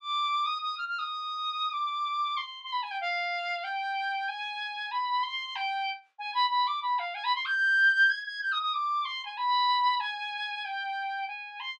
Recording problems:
none

